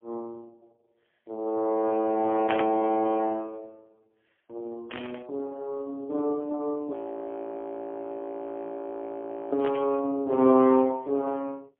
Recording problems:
telephone audio; 220 Hz to 2.9 kHz, AMR-NB, then MP3
burst of static; at 2.5 s, at 5 s and at 9.5 s; peak -1 dB vs average level
frozen audio; at 7 s for 2.5 s

